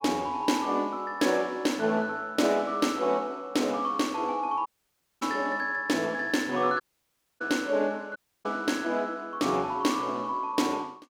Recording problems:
dropout; at 4.5 s for 0.5 s, at 7 s for 0.5 s and at 8 s

